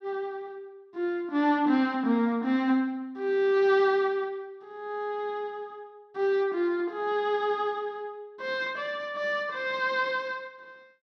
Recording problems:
none

